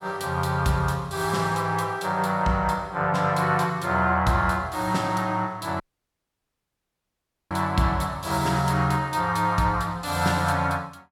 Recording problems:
dropout; at 6 s for 1.5 s

